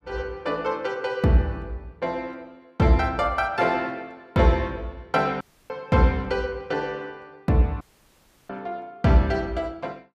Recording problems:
dropout; at 5.5 s and at 8 s for 0.5 s

